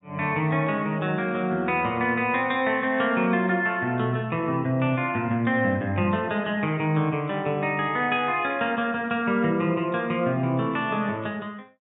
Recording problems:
treble missing; nothing above 4 kHz

